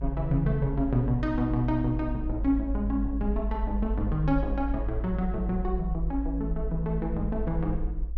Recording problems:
low-frequency rumble; below 54 Hz, strongest tone 52 Hz, SNR 4 dB

